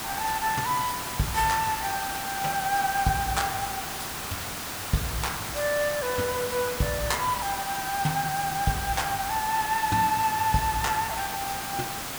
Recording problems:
background hiss; slope -2 dB per octave, SNR 4 dB

